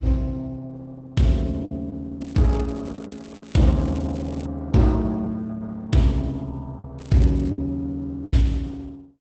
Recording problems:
lossy compression; Opus, log-spectral distance 2 dB, nothing above 8 kHz
packet loss; 5% of the sound replaced, filled with the last packet
crackling; from 2 to 4.5 s and at 7 s; loose cable, SNR 27 dB

